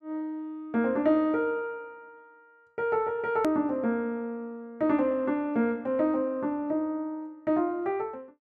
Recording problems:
click at an edit; at 3.5 s

